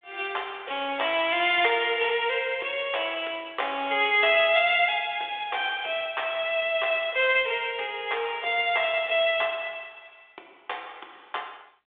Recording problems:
phone line; 300 Hz to 3.6 kHz, G.726

